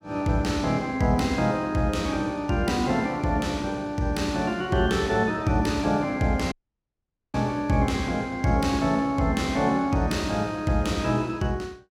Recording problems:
audio cutting out; at 6.5 s for 1 s

